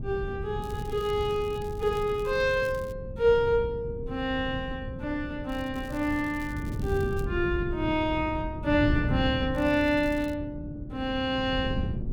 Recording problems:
wind on the microphone; below 170 Hz, SNR 7 dB
crackle; from 0.5 to 3 s, from 5.5 to 7.5 s and at 9.5 s; loose cable, SNR 24 dB

